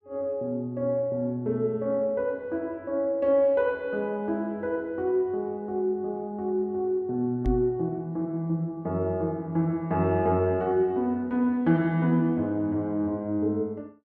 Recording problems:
microphone thump; at 7.5 s; peak +2 dB vs average level

